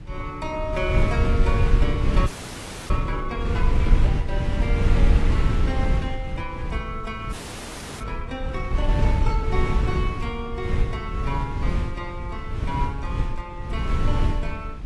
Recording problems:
lossy compression; AAC, log-spectral distance 3 dB
wind on the microphone; below 98 Hz, SNR -7 dB
audio freezing; at 2.5 s for 0.5 s and at 7.5 s for 0.5 s

